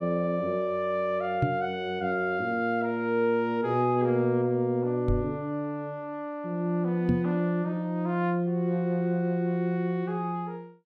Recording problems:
microphone thump; at 1.5 s, at 5 s and at 7 s; peak +5 dB vs average level

